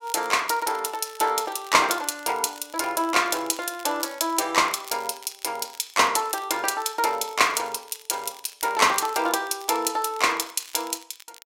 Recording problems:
crackling; vinyl, SNR 21 dB

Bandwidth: 16 kHz